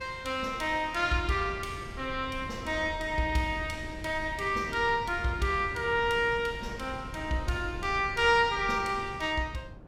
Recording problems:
wind noise; below 220 Hz, SNR 15 dB

